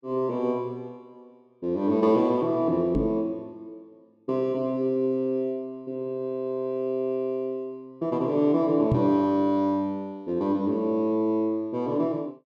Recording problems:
knock on the microphone; at 3 s and at 9 s; peak +4 dB vs average level

